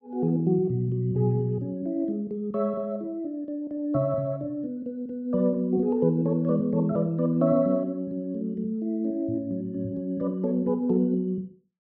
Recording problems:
none

